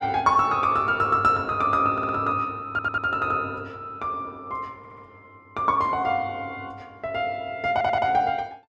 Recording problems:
stutter; 4 times, first at 2 s

